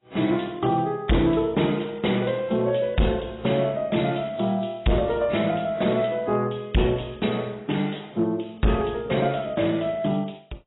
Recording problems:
codec artefacts; AAC, log-spectral distance 6 dB, nothing above 3.9 kHz
distorted audio; hard clipping, signal-to-distortion ratio 12 dB

